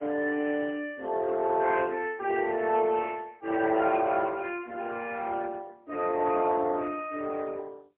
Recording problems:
phone line; 240 Hz to 3.1 kHz, AMR-NB, then MP3

